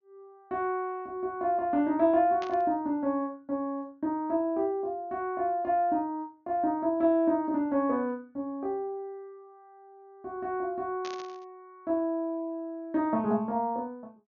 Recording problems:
low-pass filter; nothing above 6.8 kHz
static burst; at 2.5 s and at 11 s; peak -9 dB vs average level

